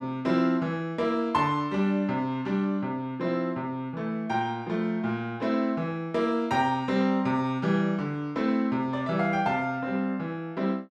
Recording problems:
none

